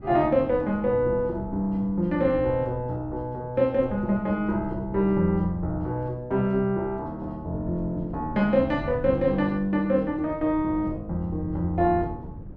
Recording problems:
wind on the microphone; below 170 Hz, SNR 15 dB

